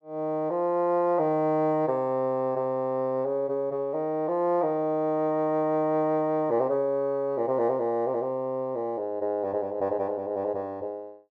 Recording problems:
none

